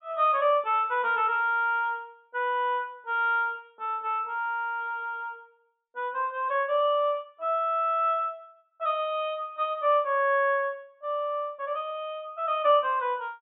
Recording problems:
treble cut off; nothing above 4 kHz

